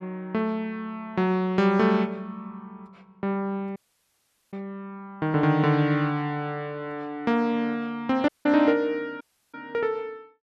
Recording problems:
dropout; at 4 s for 1 s, at 8.5 s and at 9 s

